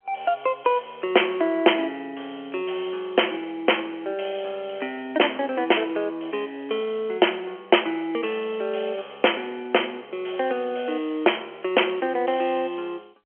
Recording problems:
phone line; 280 Hz to 3.2 kHz, G.711

